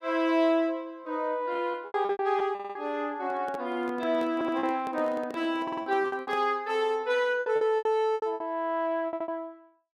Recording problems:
packet loss; 11% of the sound replaced, filled with repeated pitch periods
audio stuttering; 4 times, first at 2.5 s
handling noise; from 3 to 6.5 s; peak -9 dB vs average level

